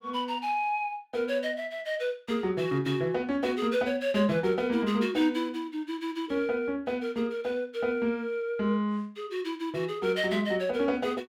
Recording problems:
none

